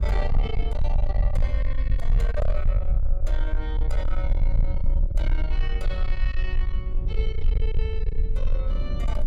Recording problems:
distortion; soft clipping, signal-to-distortion ratio 8 dB
rumble; below 50 Hz, SNR -10 dB
wind on the microphone; below 180 Hz, SNR 5 dB

